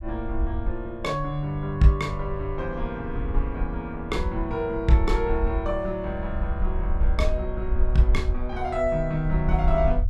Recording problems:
low-frequency rumble; below 60 Hz, SNR 4 dB

